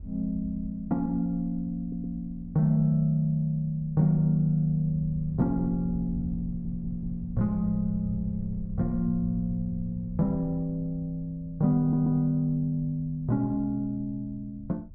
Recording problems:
wind on the microphone; below 96 Hz, SNR 15 dB
stutter; at 2 s, at 6.5 s and at 12 s

